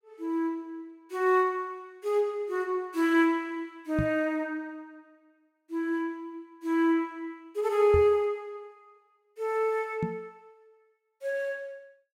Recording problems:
knock on the microphone; at 4 s, at 8 s and at 10 s; peak +3 dB vs average level

